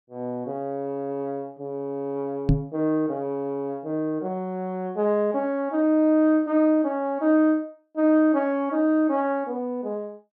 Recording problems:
knock on the microphone; at 2.5 s; peak +7 dB vs average level

